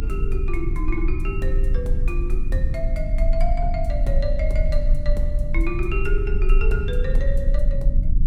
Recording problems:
electrical hum; 50 Hz, harmonics up to 300 Hz, SNR 8 dB
low-frequency rumble; below 46 Hz, strongest tone 30 Hz, SNR -6 dB

